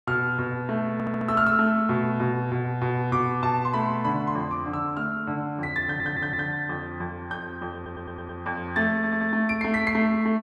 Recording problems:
audio stuttering; 4 times, first at 1 s

